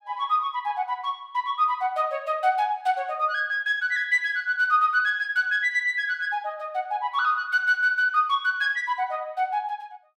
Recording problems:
none

